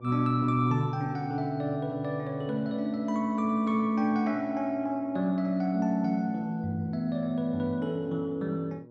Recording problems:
hum; 60 Hz, harmonics up to 1.1 kHz, SNR 22 dB

